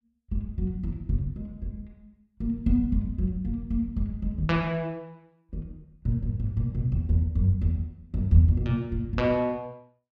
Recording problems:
none

